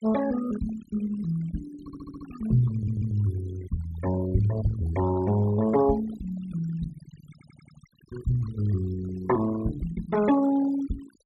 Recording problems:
noise reduction artefacts; signal-to-artefact ratio 15 dB
stutter; at 2 s, at 2.5 s and at 7.5 s

